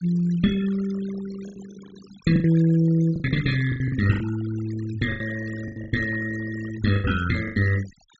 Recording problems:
low-pass filter; nothing above 8 kHz
noise reduction artefacts; signal-to-artefact ratio 15 dB
packet loss; 11% of the sound replaced, filled with the last packet

